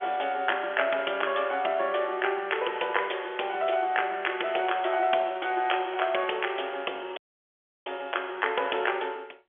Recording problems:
telephone audio; 320 Hz to 3.3 kHz, G.711
audio cutting out; at 7 s for 0.5 s

